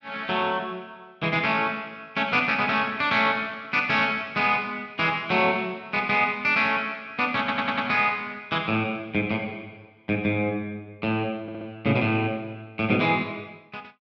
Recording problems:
stutter; at 7.5 s and at 11 s

